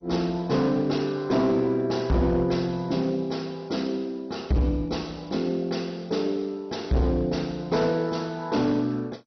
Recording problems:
lossy compression; MP2, log-spectral distance 3 dB, nothing above 5.8 kHz
distortion; hard clipping, signal-to-distortion ratio 10 dB

